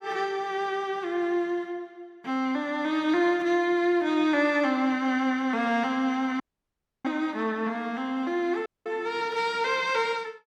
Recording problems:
audio cutting out; at 6.5 s for 0.5 s and at 8.5 s

